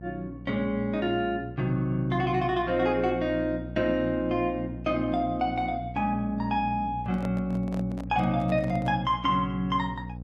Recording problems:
hum; 60 Hz, harmonics up to 540 Hz, SNR 12 dB
handling noise; from 7 to 9 s; peak -8 dB vs average level

